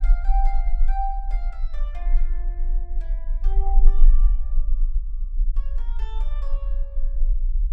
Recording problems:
low-frequency rumble; below 34 Hz, strongest tone 22 Hz, SNR -11 dB

